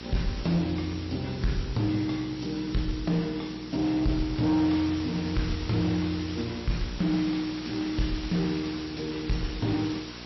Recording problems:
lossy codec; MP3, log-spectral distance 14 dB, nothing above 5.7 kHz
distorted audio; soft clipping, signal-to-distortion ratio 11 dB
hum; 60 Hz, harmonics up to 1.4 kHz, SNR 14 dB
hiss; SNR 12 dB

